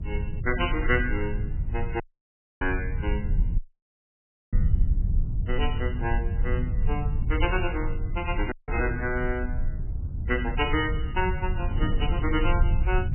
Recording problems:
lossy codec; MP3, log-spectral distance 2 dB, nothing above 2.6 kHz
low-frequency rumble; below 80 Hz, SNR -1 dB
wind on the microphone; below 230 Hz, SNR 14 dB
dropout; at 2 s for 0.5 s, at 3.5 s for 1 s and at 8.5 s

